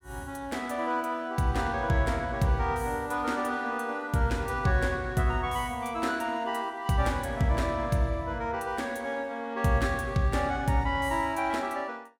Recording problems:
none

